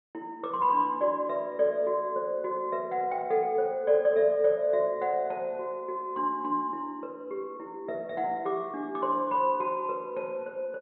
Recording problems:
low-pass filter; nothing above 4.1 kHz

